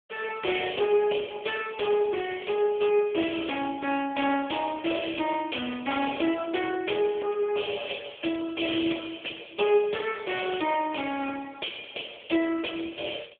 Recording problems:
phone line; 260 Hz to 3.4 kHz, AMR-NB

